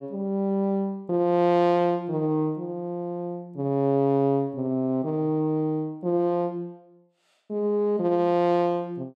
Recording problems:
none

